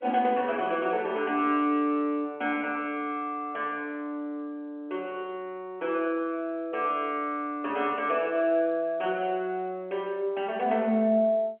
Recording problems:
phone line; 240 Hz to 3.3 kHz, G.711

